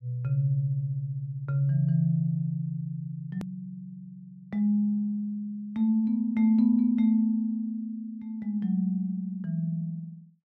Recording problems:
hard cut with a click; at 3.5 s

